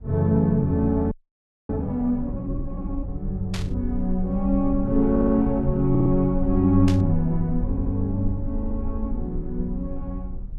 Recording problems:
low-frequency rumble; below 54 Hz, SNR 10 dB
audio freezing; at 1 s for 0.5 s
burst of static; at 3.5 s and at 7 s; peak -6 dB vs average level
stutter; 4 times, first at 5 s

